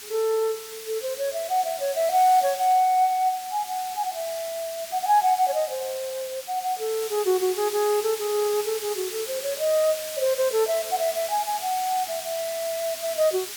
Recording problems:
hiss; slope +3 dB per octave, SNR 9 dB

